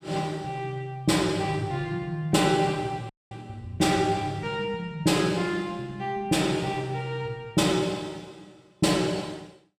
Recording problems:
dropout; at 3 s

